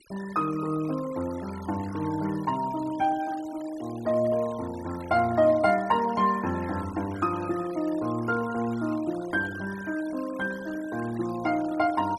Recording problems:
noise reduction artefacts; signal-to-artefact ratio 19 dB

